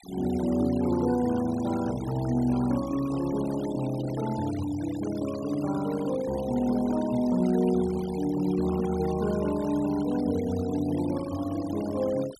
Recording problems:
noise reduction artefacts; signal-to-artefact ratio 17 dB

